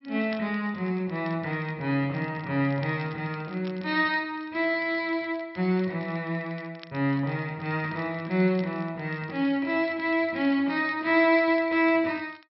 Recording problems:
treble missing; nothing above 5.5 kHz
crackle; vinyl, SNR 26 dB

